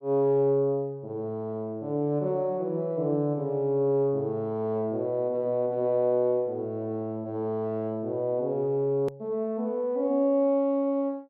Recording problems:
click at an edit; at 9 s

